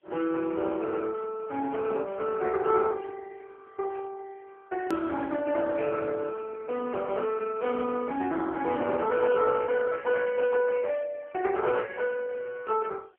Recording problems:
phone line; 240 Hz to 3.4 kHz, AMR-NB
hiss; SNR 47 dB
click at an edit; at 5 s

